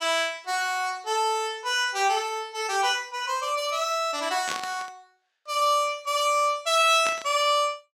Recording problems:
burst of static; at 4.5 s and at 7 s; peak -3 dB vs average level

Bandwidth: 16.5 kHz